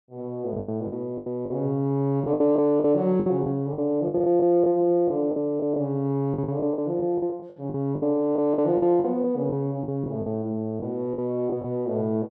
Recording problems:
packet loss; 13% of the sound replaced, filled with the last packet

